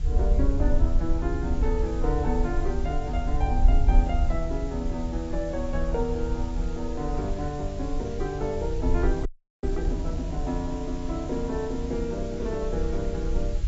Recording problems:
codec artefacts; AAC, log-spectral distance 2 dB, nothing above 7.3 kHz
hiss; slope -1 dB per octave, SNR 18 dB
wind on the microphone; below 58 Hz, SNR -1 dB
frozen audio; at 9.5 s

